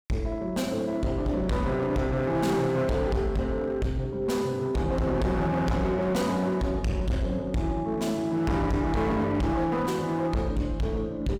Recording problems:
distorted audio; hard clipping, uneven, signal-to-distortion ratio 7 dB

